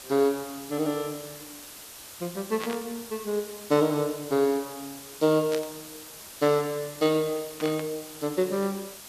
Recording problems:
background hiss; slope 0 dB per octave, SNR 14 dB
static burst; at 2.5 s, at 5.5 s and at 7.5 s; peak -4 dB vs average level

